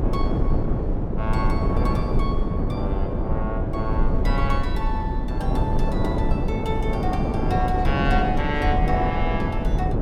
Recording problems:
rumble; below 52 Hz, strongest tone 20 Hz, SNR 1 dB
wind noise; below 360 Hz, SNR -3 dB

